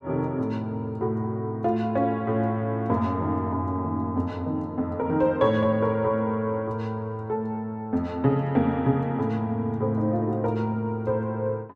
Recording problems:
none

